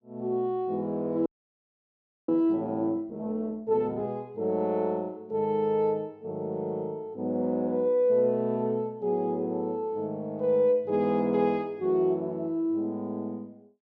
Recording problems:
frozen audio; at 1.5 s for 1 s

